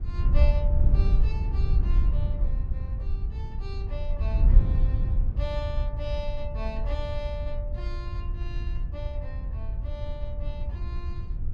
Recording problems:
wind noise; below 68 Hz, SNR -12 dB

